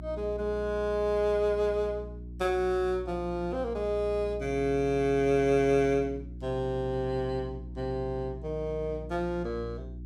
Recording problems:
hum; 60 Hz, harmonics up to 360 Hz, SNR 13 dB

